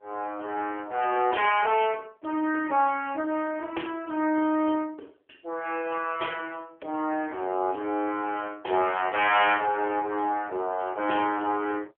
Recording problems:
phone line; 260 Hz to 3.2 kHz, AMR-NB

